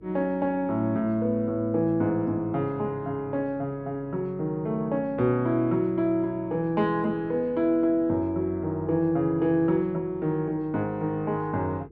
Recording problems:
electrical hum; 50 Hz, harmonics up to 450 Hz, SNR 25 dB

